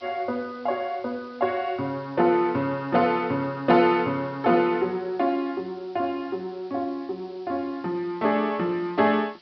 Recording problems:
low-pass filter; nothing above 5.5 kHz
background hiss; SNR 28 dB

